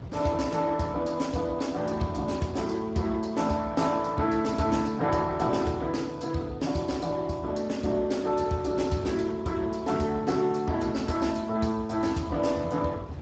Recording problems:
lossy compression; Speex, log-spectral distance 4 dB, nothing above 7.6 kHz
wind on the microphone; below 330 Hz, SNR 16 dB

